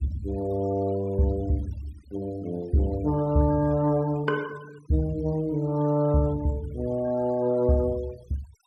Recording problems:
denoising artefacts; signal-to-artefact ratio 24 dB

